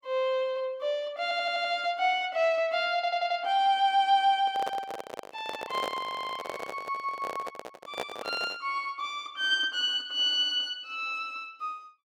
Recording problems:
audio stuttering; at 1 s, at 3 s and at 6 s
microphone handling noise; from 4.5 to 8.5 s; peak -1 dB vs average level

